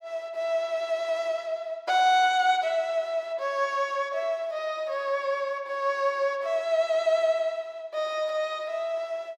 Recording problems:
none

